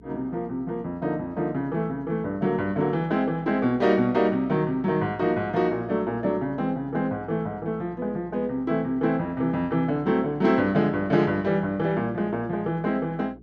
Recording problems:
electrical hum; 60 Hz, harmonics up to 420 Hz, SNR 24 dB

